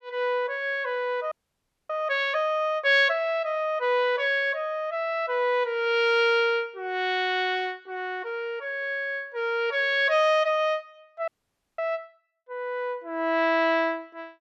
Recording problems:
frozen audio; at 1.5 s for 0.5 s and at 11 s for 0.5 s

